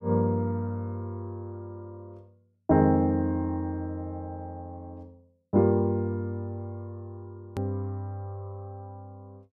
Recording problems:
edit click; at 7.5 s

